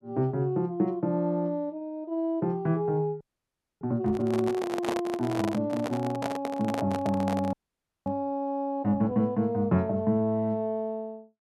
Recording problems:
audio freezing; at 3 s for 0.5 s and at 7.5 s for 0.5 s
microphone handling noise; from 4 to 8 s; peak +2 dB vs average level

